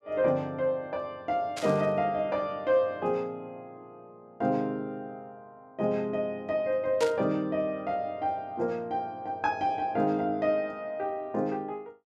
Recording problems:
burst of static; at 1.5 s and at 7 s; peak -2 dB vs average level

